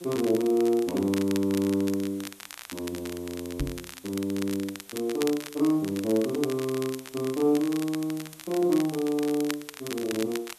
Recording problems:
hiss; slope 0 dB per octave, SNR 23 dB
crackle; vinyl, SNR 13 dB
microphone thump; at 3.5 s; peak 0 dB vs average level

